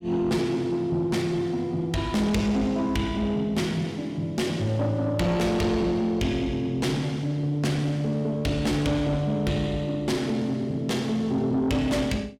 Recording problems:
distorted audio; soft clipping, signal-to-distortion ratio 11 dB

